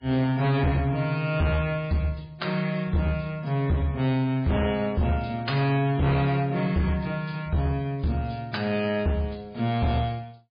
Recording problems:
codec artefacts; MP3, log-spectral distance 3 dB, nothing above 4.5 kHz
distortion; hard clipping, signal-to-distortion ratio 11 dB

